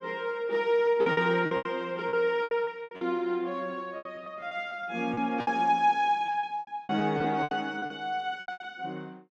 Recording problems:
packet loss; 15% of the sound replaced, filled with repeated pitch periods

